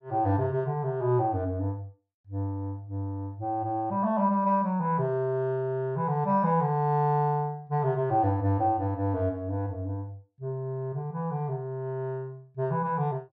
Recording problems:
none

